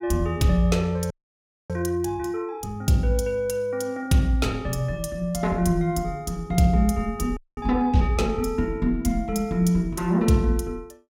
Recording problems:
frozen audio; at 1 s for 0.5 s and at 7.5 s

